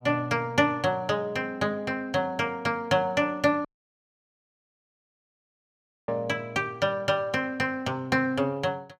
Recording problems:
audio cutting out; at 3.5 s for 2.5 s

